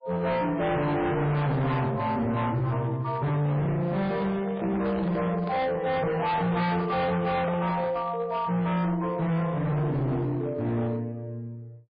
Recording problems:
lossy codec; MP3, log-spectral distance 2 dB, nothing above 4.8 kHz
distorted audio; hard clipping, uneven, signal-to-distortion ratio 7 dB
microphone handling noise; from 4 to 8 s; peak -4 dB vs average level

